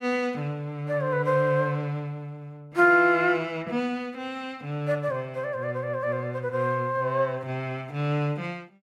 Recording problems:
none

